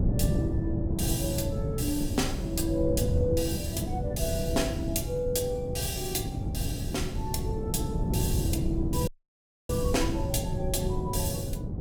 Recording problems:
wind on the microphone; below 190 Hz, SNR 0 dB
audio cutting out; at 9 s for 0.5 s

